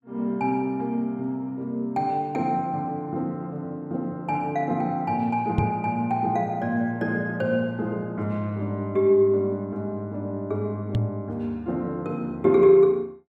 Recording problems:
microphone bump; at 5.5 s and at 11 s; peak +5 dB vs average level

